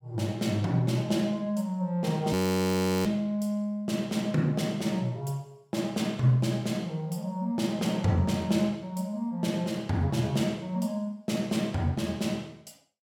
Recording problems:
audio freezing; at 2.5 s for 0.5 s

